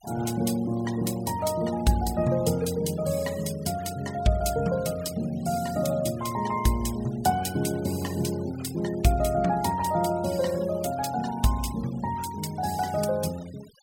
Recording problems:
denoising artefacts; signal-to-artefact ratio 19 dB

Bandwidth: 16.5 kHz